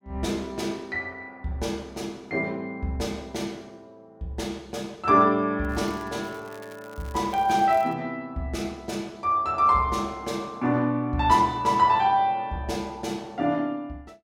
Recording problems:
crackling; from 5.5 to 8 s; loose cable, SNR 25 dB

